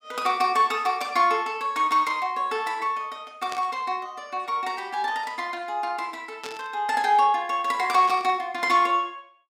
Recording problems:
static burst; at 3.5 s, at 6.5 s and at 8 s; peak -8 dB vs average level

